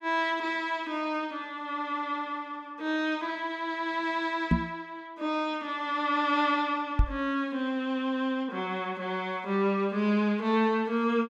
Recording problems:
knock on the microphone; at 4.5 s and at 7 s; peak +9 dB vs average level

